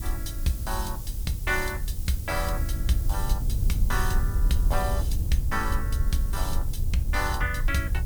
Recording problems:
background hiss; slope +5 dB per octave, SNR 11 dB
wind on the microphone; below 74 Hz, SNR -2 dB

